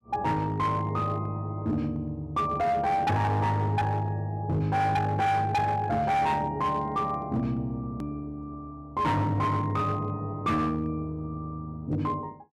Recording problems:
distortion; hard clipping, signal-to-distortion ratio 10 dB
hard cut with a click; at 8 s

